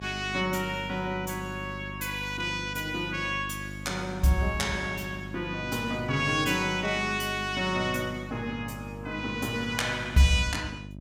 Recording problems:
hum; 50 Hz, harmonics up to 650 Hz, SNR 12 dB

